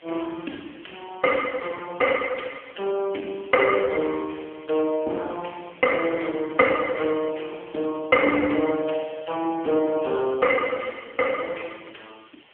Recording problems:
phone line; 260 Hz to 3.1 kHz, AMR-NB
background hiss; SNR 28 dB

